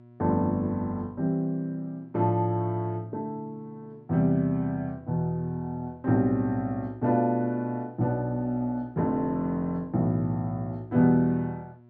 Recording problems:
mains hum; 60 Hz, harmonics up to 1.3 kHz, SNR 26 dB

